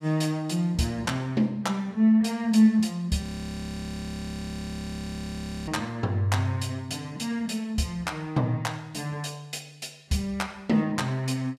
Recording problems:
audio freezing; at 3 s for 2.5 s

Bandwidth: 15 kHz